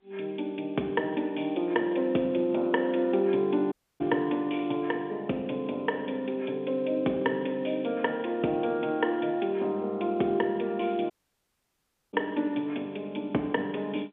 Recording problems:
telephone audio; 220 Hz to 3.4 kHz, G.711
audio cutting out; at 3.5 s and at 11 s for 1 s

